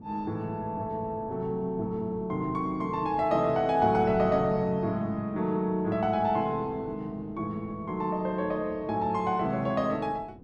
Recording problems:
wind noise; below 310 Hz, SNR 17 dB

